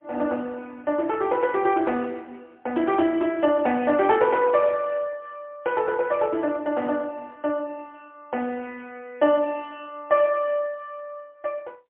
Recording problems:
phone line; 260 Hz to 3.5 kHz, AMR-NB, then MP3

